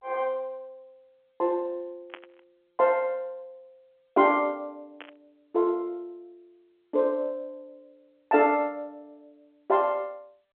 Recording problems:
phone line; 240 Hz to 3.5 kHz, G.711
burst of static; at 2 s and at 5 s; peak -9 dB vs average level

